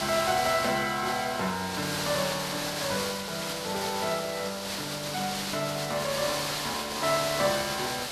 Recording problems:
background hiss; slope -1 dB per octave, SNR 2 dB

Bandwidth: 13.5 kHz